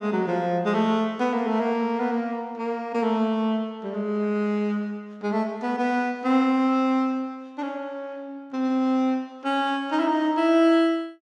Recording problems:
none

